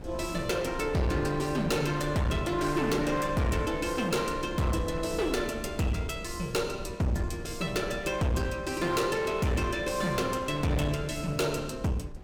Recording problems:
distortion; hard clipping, uneven, signal-to-distortion ratio 7 dB
wind noise; below 230 Hz, SNR 14 dB

